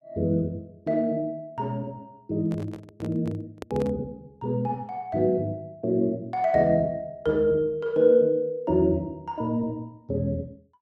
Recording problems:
handling noise; from 2.5 to 4 s; peak -7 dB vs average level

